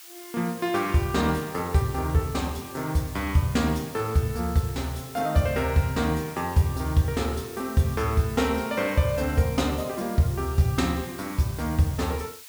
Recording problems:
hiss; slope +4 dB per octave, SNR 16 dB

